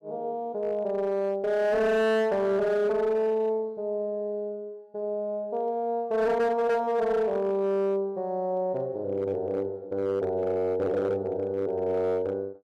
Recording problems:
distorted audio; hard clipping, signal-to-distortion ratio 10 dB

